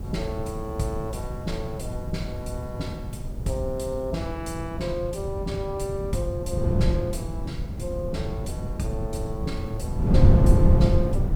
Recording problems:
hiss; SNR 26 dB
wind noise; below 140 Hz, SNR -4 dB

